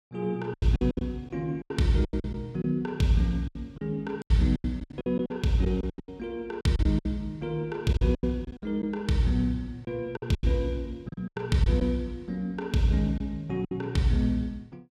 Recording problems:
packet loss; 13% of the sound replaced, filled with silence

